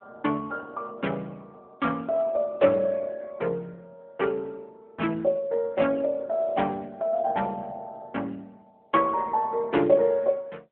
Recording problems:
telephone audio; 190 Hz to 3.4 kHz, AMR-NB

